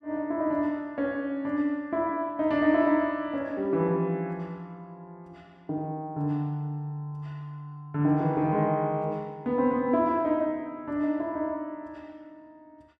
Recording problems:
none

